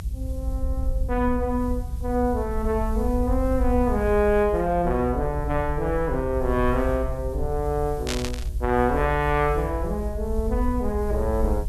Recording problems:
background hiss; slope +7 dB per octave, SNR 27 dB
rumble; below 64 Hz, SNR 5 dB
burst of static; at 8 s; peak 0 dB vs average level

